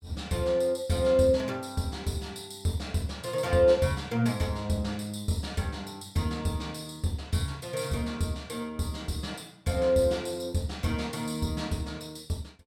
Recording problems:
none

